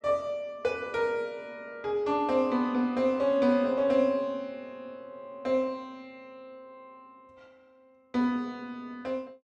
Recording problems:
none

